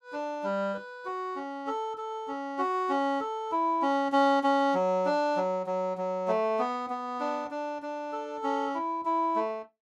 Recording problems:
none

